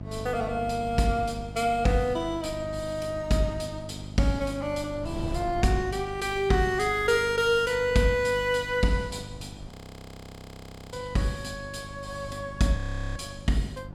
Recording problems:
hum; 50 Hz, harmonics up to 650 Hz, SNR 14 dB
wind on the microphone; below 180 Hz, SNR 17 dB
frozen audio; at 9.5 s for 1 s and at 13 s

